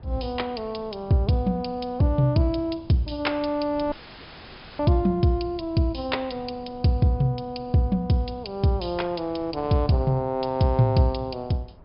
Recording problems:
treble cut off; nothing above 5.5 kHz
wind noise; below 330 Hz, SNR 23 dB
dropout; at 4 s for 1 s; filled with static

